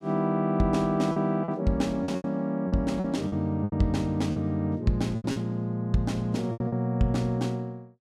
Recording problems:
lost packets; 9% of the sound replaced, filled with repeated pitch periods

